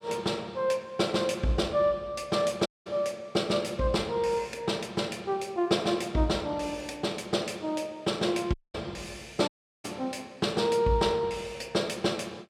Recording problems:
dropout; at 2.5 s, at 8.5 s and at 9.5 s

